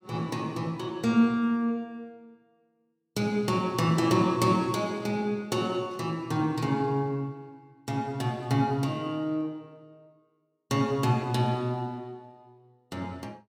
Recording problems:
none

